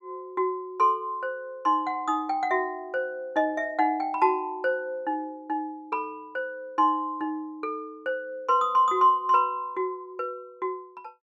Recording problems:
none

